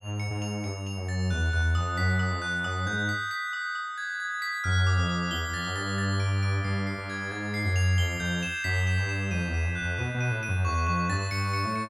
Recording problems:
none

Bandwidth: 16 kHz